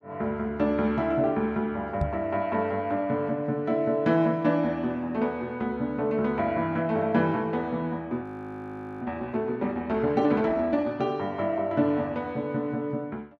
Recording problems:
microphone thump; at 2 s; peak +3 dB vs average level
frozen audio; at 8 s for 1 s

